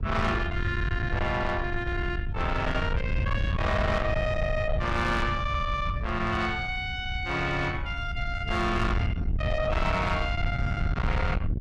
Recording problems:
distorted audio; soft clipping, signal-to-distortion ratio 8 dB
wind noise; below 130 Hz, SNR 3 dB

